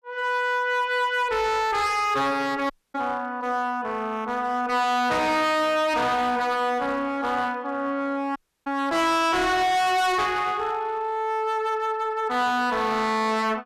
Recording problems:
distorted audio; hard clipping, uneven, signal-to-distortion ratio 5 dB
dropout; at 2.5 s and at 8.5 s

